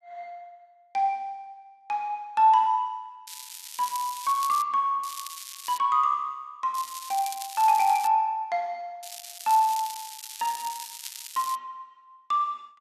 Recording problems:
crackling; 4 times, first at 3.5 s; loose cable, SNR 12 dB

